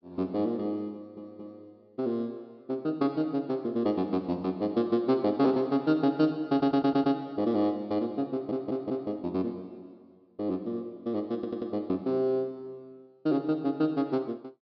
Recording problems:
treble missing; nothing above 5.5 kHz
stutter; 4 times, first at 1 s

